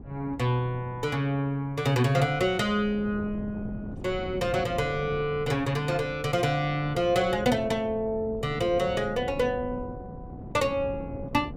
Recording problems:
wind on the microphone; below 290 Hz, SNR 13 dB

